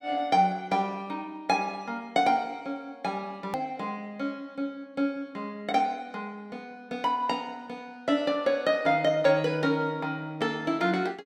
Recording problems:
edit click; at 3.5 s

